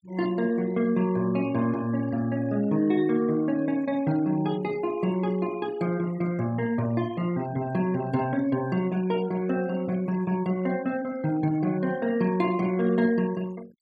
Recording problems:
denoising artefacts; signal-to-artefact ratio 22 dB

